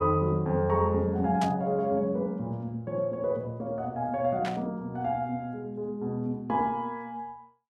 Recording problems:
burst of static; at 1.5 s and at 4.5 s; peak -4 dB vs average level

